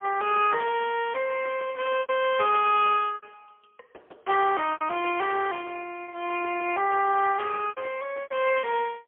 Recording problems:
telephone audio; 370 Hz to 3.3 kHz, AMR-NB, then MP3
packet loss; 5% of the sound replaced, filled with repeated pitch periods

